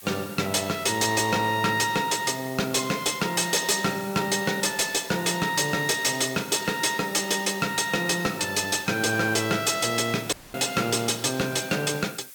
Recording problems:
distorted audio; hard clipping, signal-to-distortion ratio 11 dB
hiss; slope +2 dB per octave, SNR 17 dB
dropout; at 10 s

